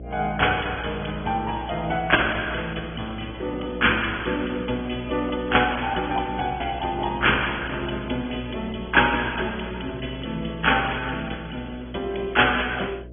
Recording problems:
low-pass filter; nothing above 3.4 kHz
lossy codec; AAC, then AAC, log-spectral distance 5 dB
hum; 60 Hz, harmonics up to 660 Hz, SNR 15 dB

